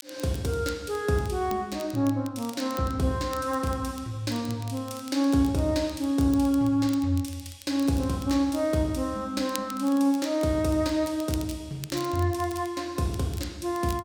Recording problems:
crackling; vinyl, SNR 19 dB

